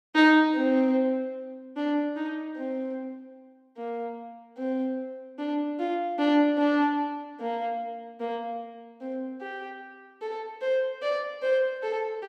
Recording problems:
none

